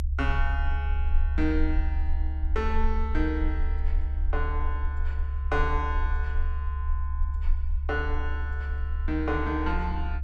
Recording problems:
rumble; below 70 Hz, SNR -3 dB

